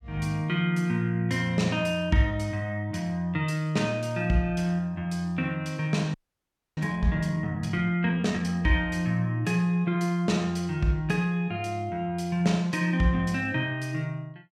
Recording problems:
audio freezing; at 6 s for 0.5 s

